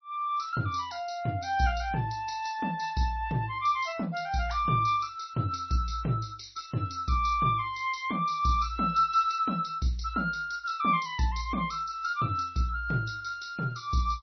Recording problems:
codec artefacts; MP3, log-spectral distance 4 dB, nothing above 5.8 kHz

